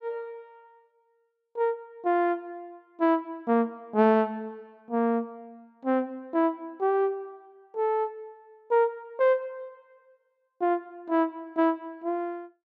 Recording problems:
none

